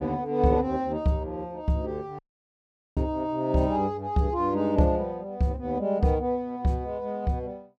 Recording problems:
dropout; at 2 s for 1 s

